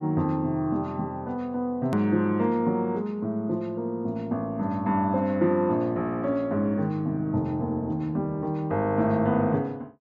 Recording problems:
treble missing; nothing above 8 kHz
edit click; at 2 s

